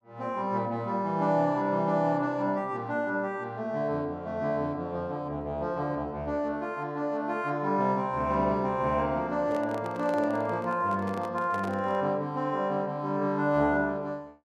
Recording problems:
handling noise; from 9.5 to 12 s; peak -7 dB vs average level

